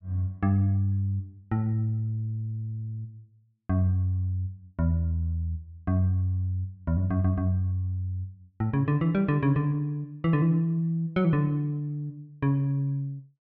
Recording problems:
none

